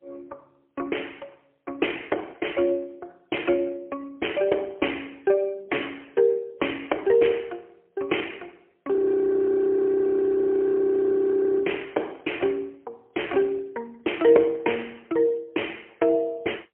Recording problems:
phone line; 300 Hz to 3.2 kHz, AMR-NB, then MP3
audio freezing; at 9 s for 2.5 s

